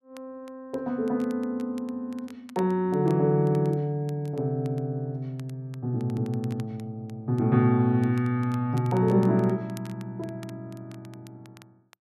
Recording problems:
crackle; vinyl, SNR 27 dB

